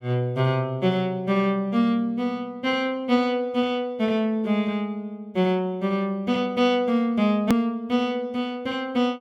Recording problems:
edit click; at 7.5 s

